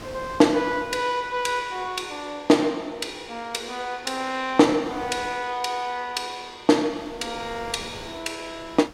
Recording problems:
wind noise; below 1.8 kHz, SNR 20 dB

